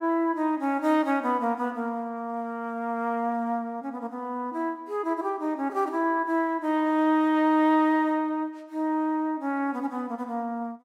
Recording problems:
none

